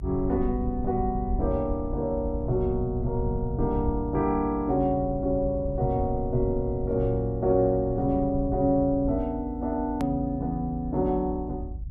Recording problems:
rumble; below 92 Hz, SNR 8 dB
hard cut with a click; at 10 s

